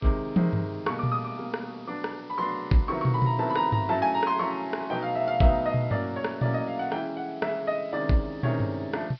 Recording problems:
treble cut off; nothing above 5.5 kHz
background hiss; SNR 27 dB

